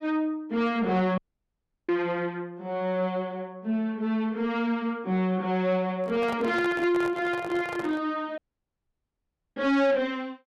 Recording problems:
distorted audio; soft clipping, signal-to-distortion ratio 10 dB
dropout; at 1 s for 0.5 s and at 8.5 s for 1 s
handling noise; from 6 to 8 s; peak -5 dB vs average level

